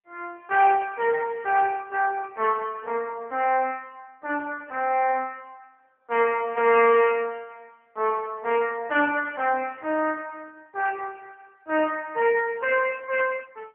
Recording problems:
telephone audio; 260 Hz to 3 kHz, AMR-NB

